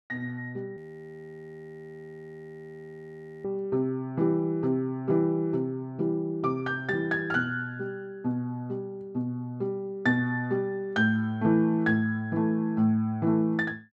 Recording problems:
frozen audio; at 1 s for 2.5 s

